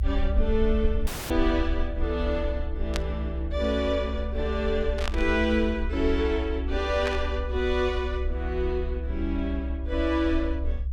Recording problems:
rumble; below 66 Hz, SNR 3 dB
dropout; at 1 s
burst of static; at 3 s, at 5 s and at 7 s; peak 0 dB vs average level

